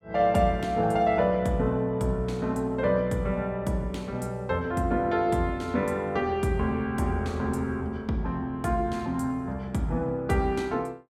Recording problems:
none

